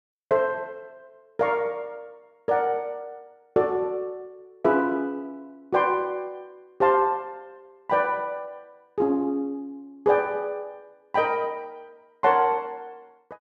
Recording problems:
none

